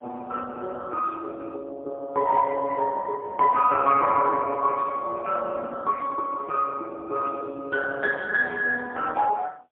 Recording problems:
telephone audio; 300 Hz to 3 kHz, AMR-NB, then MP3

